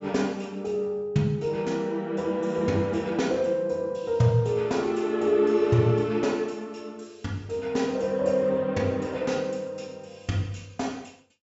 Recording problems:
low-pass filter; nothing above 8 kHz

